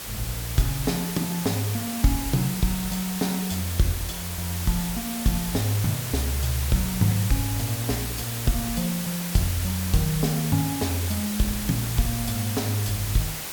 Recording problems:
background hiss; slope -1 dB per octave, SNR 4 dB

